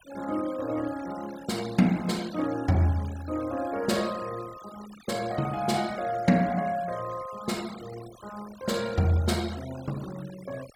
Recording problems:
noise reduction artefacts; signal-to-artefact ratio 18 dB

